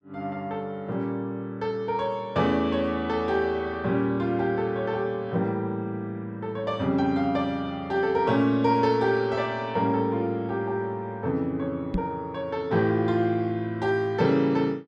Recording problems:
microphone thump; at 12 s; peak +2 dB vs average level

